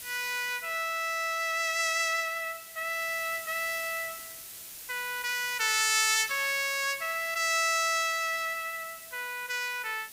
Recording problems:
background hiss; SNR 13 dB

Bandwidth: 15.5 kHz